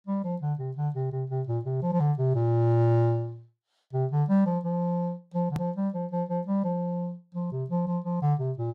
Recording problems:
edit click; at 5.5 s

